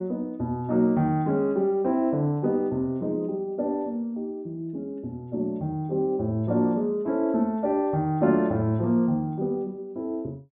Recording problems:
low-pass filter; nothing above 4 kHz

